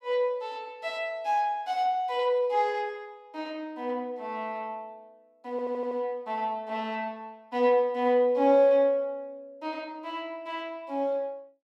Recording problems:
stutter; at 5.5 s

